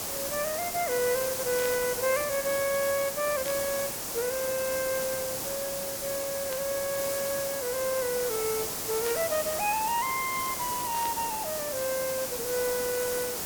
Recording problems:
hiss; SNR 1 dB
static burst; 5 times, first at 1.5 s; peak -6 dB vs average level

